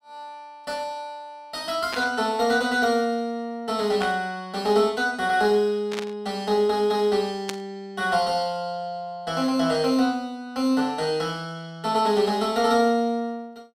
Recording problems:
burst of static; 4 times, first at 2 s; peak -2 dB vs average level

